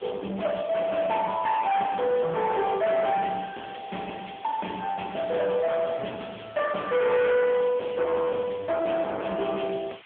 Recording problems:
phone line; 320 Hz to 3.3 kHz, AMR-NB
distorted audio; hard clipping, signal-to-distortion ratio 7 dB
hiss; SNR 23 dB

